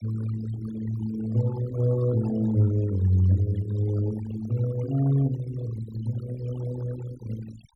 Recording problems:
denoising artefacts; signal-to-artefact ratio 15 dB

